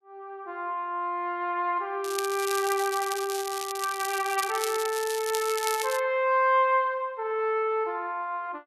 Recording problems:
crackle; from 2 to 6 s; loose cable, SNR 8 dB

